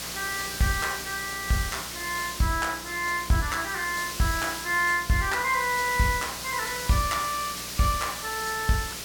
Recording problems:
hum; 60 Hz, harmonics up to 720 Hz, SNR 20 dB
hiss; slope +1 dB per octave, SNR 6 dB

